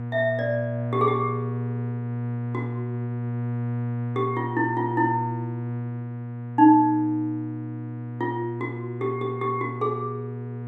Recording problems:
hum; 60 Hz, harmonics up to 1.2 kHz, SNR 6 dB

